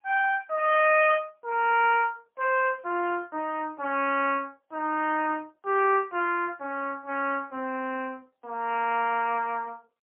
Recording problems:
telephone audio; 260 Hz to 3 kHz, AMR-NB, then MP3

